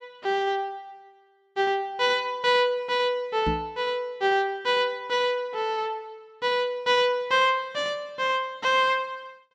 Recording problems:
microphone bump; at 3.5 s; peak -1 dB vs average level

